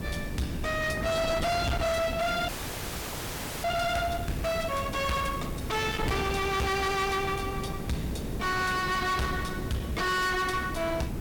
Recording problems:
distorted audio; hard clipping, uneven, signal-to-distortion ratio 6 dB
background hiss; slope -3 dB per octave, SNR 17 dB
wind noise; below 430 Hz, SNR 7 dB
audio freezing; at 2.5 s for 1 s

